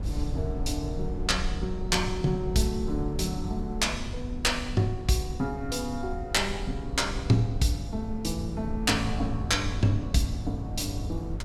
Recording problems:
hum; 50 Hz, harmonics up to 600 Hz, SNR 20 dB
wind on the microphone; below 92 Hz, SNR 7 dB

